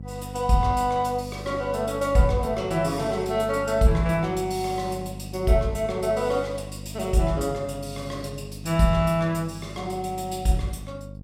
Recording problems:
electrical hum; 50 Hz, harmonics up to 550 Hz, SNR 13 dB

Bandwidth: 16 kHz